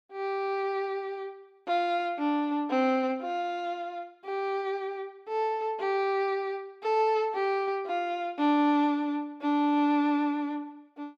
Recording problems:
none

